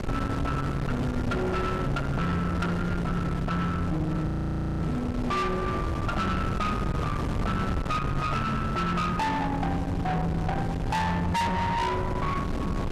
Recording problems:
distortion; soft clipping, signal-to-distortion ratio 7 dB
wind noise; below 510 Hz, SNR 2 dB
audio freezing; at 4.5 s for 0.5 s

